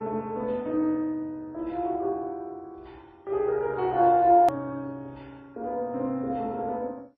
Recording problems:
codec artefacts; MP3, then MP2, log-spectral distance 2 dB, nothing above 13.1 kHz
click at an edit; at 4.5 s

